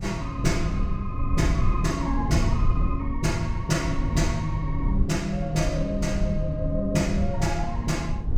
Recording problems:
wind noise; below 92 Hz, SNR 2 dB

